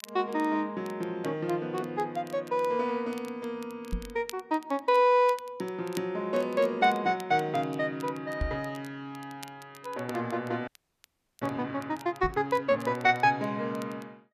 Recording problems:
crackling; vinyl, SNR 23 dB
microphone thump; at 4 s, at 8.5 s and at 12 s; peak +1 dB vs average level
audio freezing; at 11 s for 0.5 s

